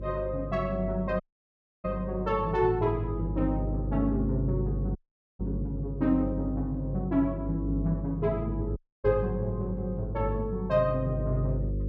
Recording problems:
hum; 50 Hz, harmonics up to 550 Hz, SNR 5 dB
dropout; at 1 s for 0.5 s, at 5 s and at 9 s

